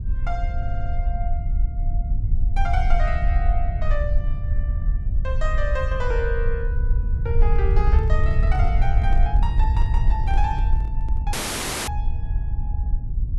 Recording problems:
rumble; below 66 Hz, SNR -7 dB
audio stuttering; at 0.5 s
microphone handling noise; from 7.5 to 11 s; peak -7 dB vs average level
dropout; at 11 s for 0.5 s

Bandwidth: 12 kHz